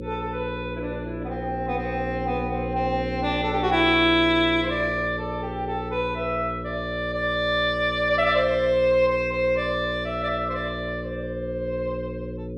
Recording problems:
hum; 60 Hz, harmonics up to 540 Hz, SNR 8 dB

